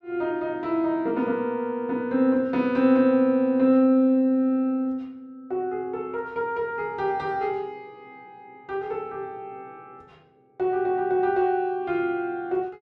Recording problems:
none

